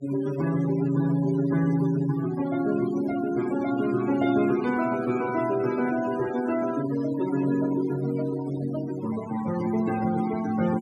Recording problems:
denoising artefacts; signal-to-artefact ratio 13 dB

